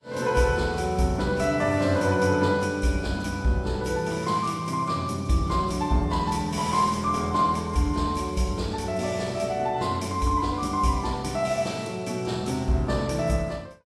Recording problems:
codec artefacts; AAC, log-spectral distance 3 dB, nothing above 12 kHz

